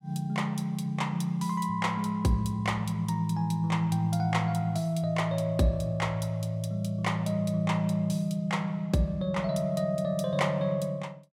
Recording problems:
none

